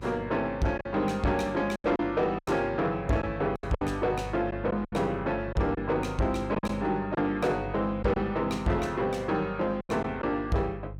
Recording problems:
distortion; soft clipping, signal-to-distortion ratio 11 dB
hum; 50 Hz, harmonics up to 350 Hz, SNR 14 dB
lost packets; 7% of the sound replaced, filled with silence

